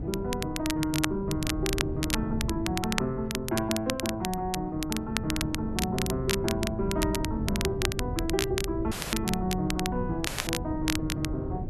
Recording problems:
wind noise; below 190 Hz, SNR 5 dB
crackle; vinyl, SNR 3 dB
audio cutting out; at 9 s and at 10 s

